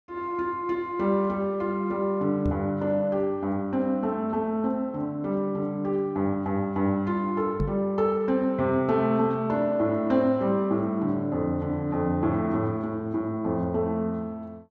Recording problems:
microphone thump; at 2.5 s and at 7.5 s; peak +2 dB vs average level

